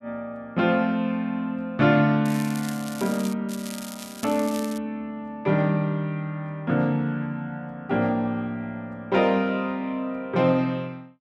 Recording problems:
crackle; from 2.5 to 3.5 s and from 3.5 to 5 s; loose cable, SNR 14 dB

